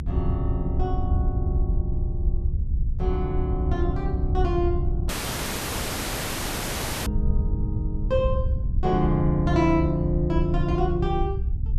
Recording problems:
rumble; below 72 Hz, SNR 2 dB
wind noise; below 100 Hz, SNR 5 dB
dropout; at 5 s for 2 s

